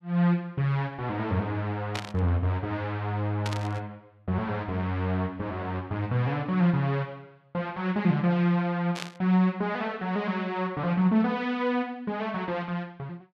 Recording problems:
burst of static; at 2 s, at 3.5 s and at 9 s; peak -2 dB vs average level

